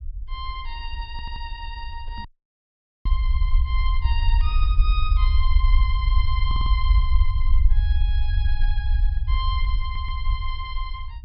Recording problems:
low-pass filter; nothing above 5.5 kHz
rumble; below 58 Hz, SNR -11 dB
audio stuttering; at 1 s, at 6.5 s and at 10 s
knock on the microphone; at 2 s; peak -1 dB vs average level
dropout; at 2.5 s for 1 s

